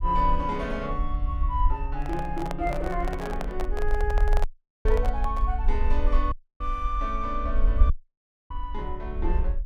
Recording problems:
low-frequency rumble; below 50 Hz, strongest tone 20 Hz, SNR -1 dB
microphone handling noise; from 2 to 5.5 s; peak +2 dB vs average level
audio cutting out; at 4.5 s, at 6.5 s and at 8 s for 0.5 s

